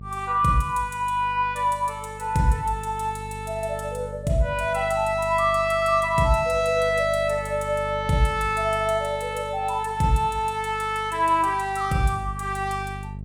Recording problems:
hum; 50 Hz, harmonics up to 450 Hz, SNR 15 dB

